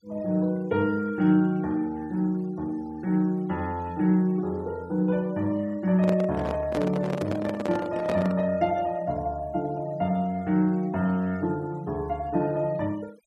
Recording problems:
denoising artefacts; signal-to-artefact ratio 26 dB
microphone handling noise; from 6 to 8.5 s; peak 0 dB vs average level

